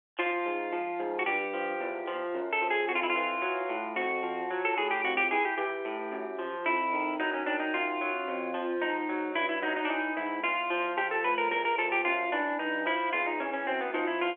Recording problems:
phone line; 300 Hz to 3.5 kHz, G.711

